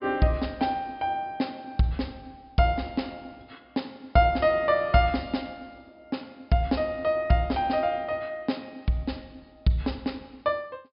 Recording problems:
treble missing; nothing above 5.5 kHz

